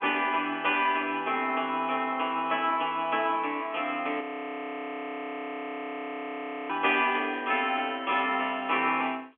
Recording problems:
telephone audio; 260 Hz to 3.3 kHz, G.711
frozen audio; at 4 s for 2.5 s

